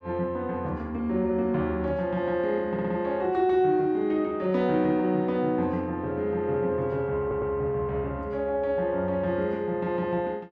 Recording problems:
audio stuttering; at 2.5 s and at 7 s

